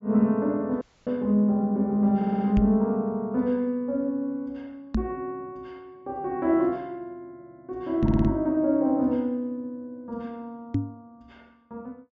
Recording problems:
low-pass filter; nothing above 7.5 kHz
audio cutting out; at 1 s
audio stuttering; at 2 s and at 8 s
microphone thump; 4 times, first at 2.5 s; peak +5 dB vs average level

